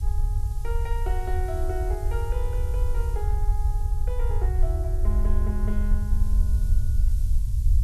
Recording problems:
hiss; SNR 15 dB
low-frequency rumble; below 66 Hz, SNR -10 dB

